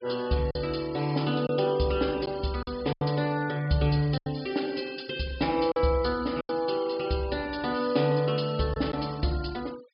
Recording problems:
treble cut off; nothing above 5.5 kHz
denoising artefacts; signal-to-artefact ratio 21 dB
packet loss; 4% of the sound replaced, filled with silence

